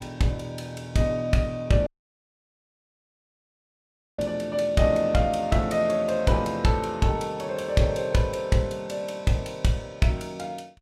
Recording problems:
audio cutting out; at 2 s for 2.5 s

